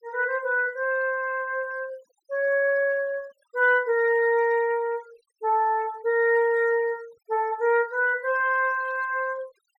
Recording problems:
denoising artefacts; signal-to-artefact ratio 27 dB

